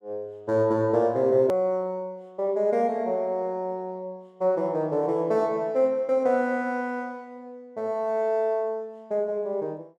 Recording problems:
hard cut with a click; at 1.5 s

